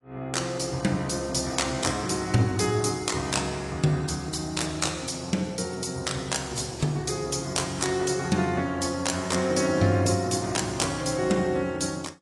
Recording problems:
lossy codec; AAC, log-spectral distance 6 dB, nothing above 11.3 kHz

